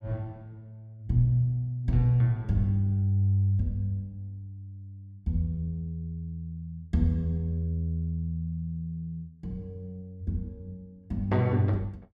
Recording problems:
none

